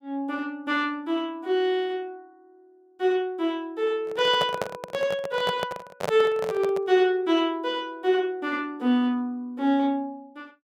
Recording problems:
microphone handling noise; from 4 to 7 s; peak +1 dB vs average level

